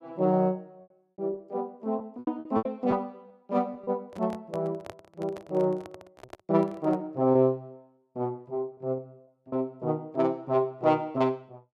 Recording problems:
packet loss; 5% of the sound replaced, filled with repeated pitch periods
microphone handling noise; from 4 to 7 s; peak -7 dB vs average level

